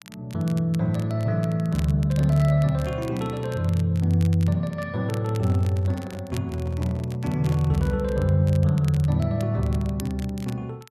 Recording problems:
crackle; vinyl, SNR 22 dB
microphone handling noise; from 5.5 to 8 s; peak -10 dB vs average level

